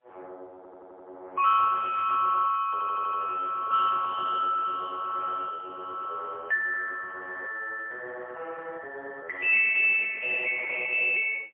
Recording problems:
phone line; 600 Hz to 3 kHz, AMR-NB, then MP3
audio stuttering; at 0.5 s and at 2.5 s

